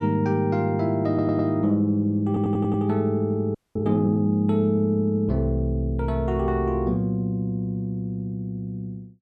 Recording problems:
stutter; at 1 s and at 2.5 s
audio freezing; at 3.5 s

